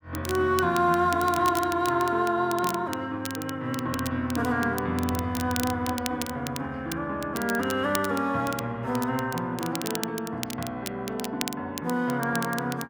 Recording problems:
crackle; vinyl, SNR 11 dB

